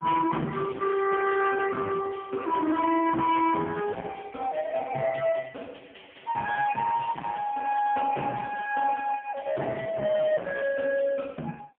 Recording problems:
telephone audio; 170 Hz to 3.3 kHz, AMR-NB, then MP3
distortion; hard clipping, signal-to-distortion ratio 11 dB

